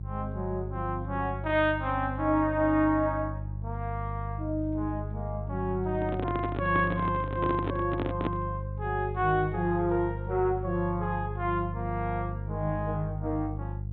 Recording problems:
treble cut off; nothing above 4 kHz
hum; 50 Hz, harmonics up to 350 Hz, SNR 6 dB
microphone handling noise; from 6 to 8.5 s; peak +3 dB vs average level

